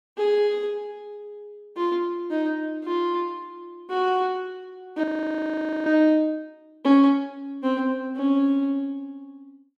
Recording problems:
audio freezing; at 5 s for 1 s

